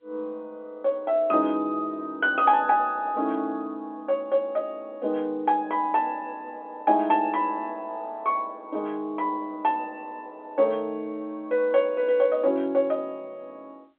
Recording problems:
telephone audio; 240 Hz to 3.3 kHz, G.711

